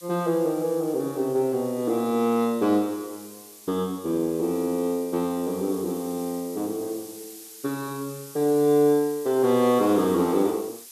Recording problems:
hiss; SNR 18 dB

